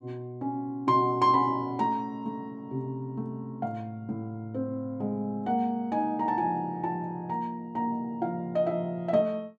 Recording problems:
none

